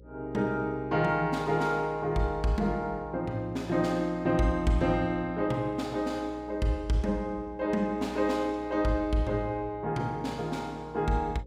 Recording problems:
hum; 60 Hz, harmonics up to 540 Hz, SNR 20 dB

